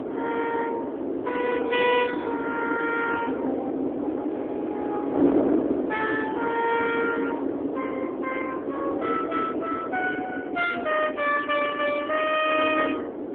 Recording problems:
telephone audio; 240 Hz to 3.4 kHz, AMR-NB
wind noise; below 490 Hz, SNR 2 dB

